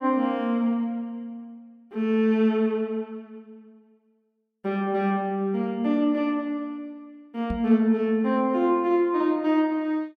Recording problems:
microphone bump; at 7.5 s; peak -3 dB vs average level

